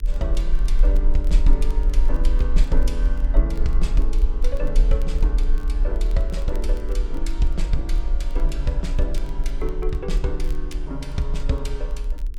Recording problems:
hum; 50 Hz, harmonics up to 450 Hz, SNR 22 dB
rumble; below 40 Hz, strongest tone 26 Hz, SNR -5 dB
crackling; vinyl, SNR 25 dB

